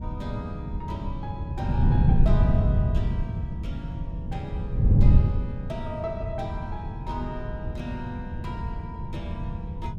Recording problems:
wind noise; below 140 Hz, SNR -9 dB

